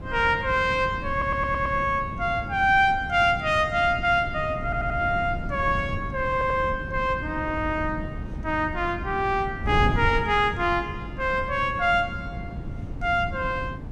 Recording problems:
wind noise; below 190 Hz, SNR 10 dB
audio stuttering; at 1 s, at 4.5 s and at 6.5 s

